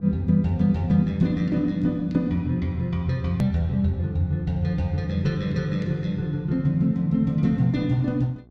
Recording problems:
hum; 60 Hz, harmonics up to 780 Hz, SNR 28 dB
edit click; at 3.5 s

